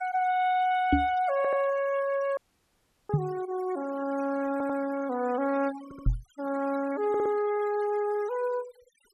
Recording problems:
denoising artefacts; signal-to-artefact ratio 17 dB
knock on the microphone; at 1 s, at 3 s and at 6 s; peak +8 dB vs average level
stutter; 4 times, first at 1.5 s
audio cutting out; at 2.5 s for 0.5 s

